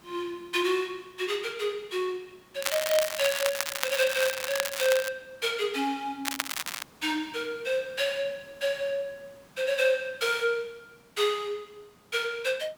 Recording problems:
background hiss; slope -4 dB per octave, SNR 27 dB
crackling; from 2.5 to 5 s and at 6.5 s; loose cable, SNR 3 dB

